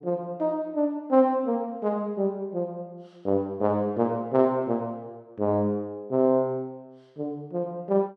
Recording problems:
none

